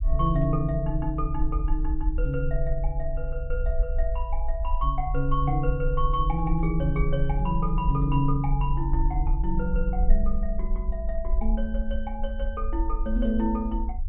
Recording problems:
treble missing; nothing above 4 kHz
low-frequency rumble; below 48 Hz, SNR 1 dB

